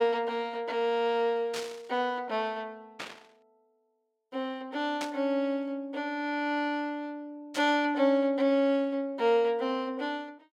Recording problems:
burst of static; 4 times, first at 1.5 s; peak -4 dB vs average level

